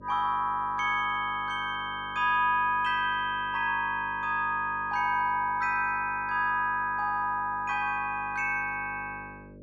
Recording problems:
hum; 50 Hz, harmonics up to 600 Hz, SNR 21 dB

